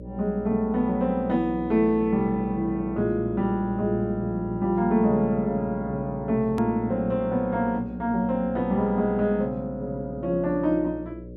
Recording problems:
electrical hum; 60 Hz, harmonics up to 600 Hz, SNR 14 dB
edit click; at 6.5 s

